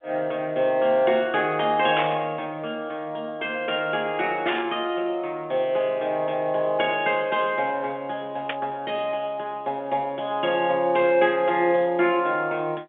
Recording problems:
telephone audio; 280 Hz to 3.7 kHz, G.711
static burst; at 2 s, at 4.5 s and at 8.5 s; peak 0 dB vs average level

